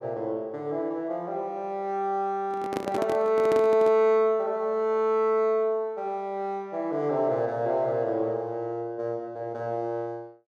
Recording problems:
handling noise; from 2.5 to 4 s; peak 0 dB vs average level

